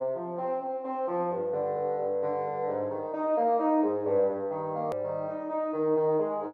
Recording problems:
edit click; at 5 s

